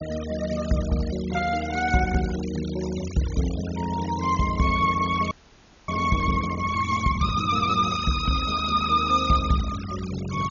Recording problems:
treble cut off; nothing above 6.9 kHz
noise reduction artefacts; signal-to-artefact ratio 14 dB
frozen audio; at 5.5 s for 0.5 s

